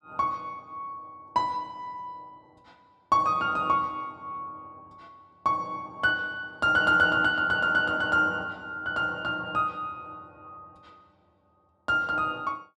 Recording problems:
none

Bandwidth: 12 kHz